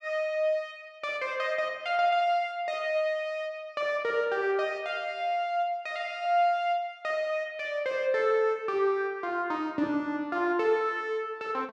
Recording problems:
none

